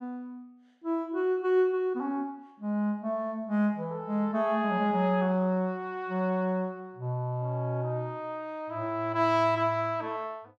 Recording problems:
none

